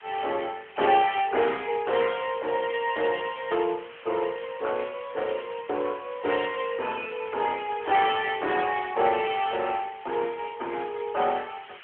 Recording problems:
phone line; 280 Hz to 3.3 kHz, AMR-NB
background hiss; SNR 19 dB

